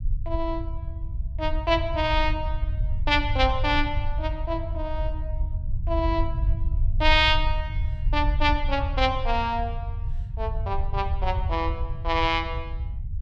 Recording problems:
rumble; below 76 Hz, SNR 3 dB

